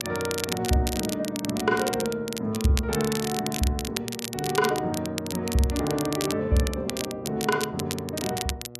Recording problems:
electrical hum; 60 Hz, harmonics up to 1.3 kHz, SNR 17 dB
crackle; vinyl, SNR 7 dB

